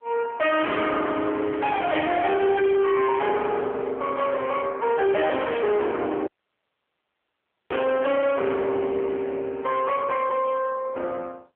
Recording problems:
phone line; 320 Hz to 3.2 kHz, AMR-NB
distorted audio; hard clipping, signal-to-distortion ratio 7 dB
static burst; at 2 s and at 5.5 s; peak -7 dB vs average level
audio cutting out; at 6.5 s for 1.5 s

